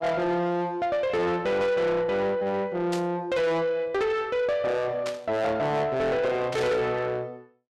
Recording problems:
distortion; soft clipping, signal-to-distortion ratio 8 dB
static burst; at 3 s, at 5 s and at 6.5 s; peak -6 dB vs average level

